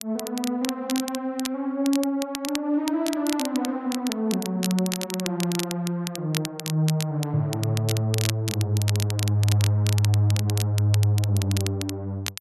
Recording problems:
crackle; vinyl, SNR 9 dB

